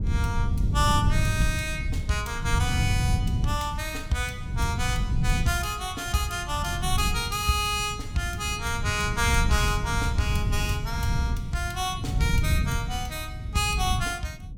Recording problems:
wind noise; below 130 Hz, SNR 1 dB

